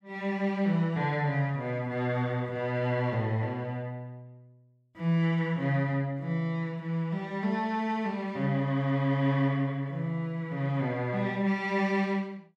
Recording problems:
none

